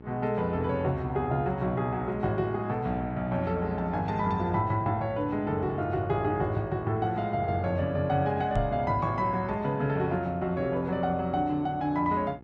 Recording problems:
hum; 60 Hz, harmonics up to 1.3 kHz, SNR 20 dB
knock on the microphone; at 8.5 s; peak +1 dB vs average level

